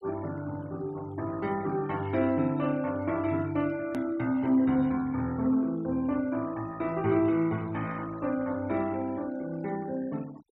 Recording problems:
denoising artefacts; signal-to-artefact ratio 22 dB
hard cut with a click; at 4 s

